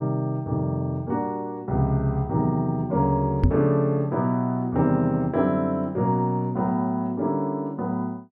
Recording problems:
microphone thump; at 3.5 s; peak +7 dB vs average level

